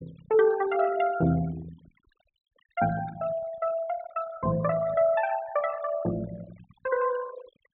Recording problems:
treble missing; nothing above 4 kHz
denoising artefacts; signal-to-artefact ratio 16 dB

